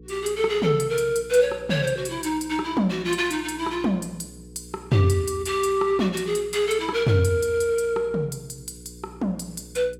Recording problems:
hum; 60 Hz, harmonics up to 480 Hz, SNR 22 dB

